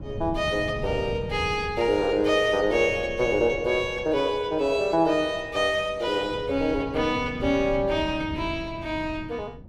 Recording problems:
wind noise; below 190 Hz, SNR 14 dB

